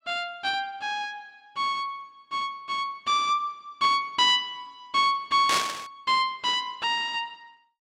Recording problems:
burst of static; at 5.5 s; peak +3 dB vs average level

